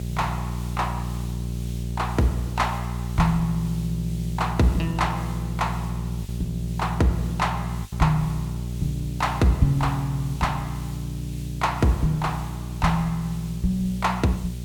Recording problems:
hum; 60 Hz, harmonics up to 420 Hz, SNR 5 dB
hiss; slope +3 dB per octave, SNR 19 dB
lost packets; 0.8% of the sound replaced, filled with the last packet

